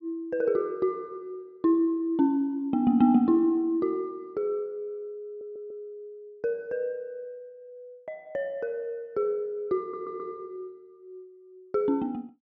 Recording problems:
stutter; at 5.5 s and at 10 s

